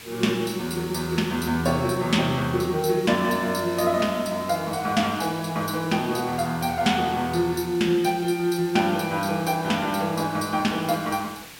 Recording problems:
background hiss; SNR 17 dB

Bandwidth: 16.5 kHz